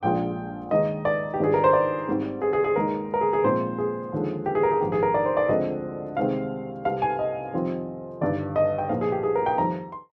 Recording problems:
none

